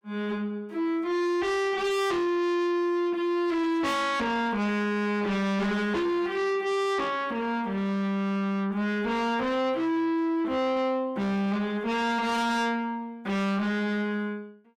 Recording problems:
distorted audio; soft clipping, signal-to-distortion ratio 7 dB

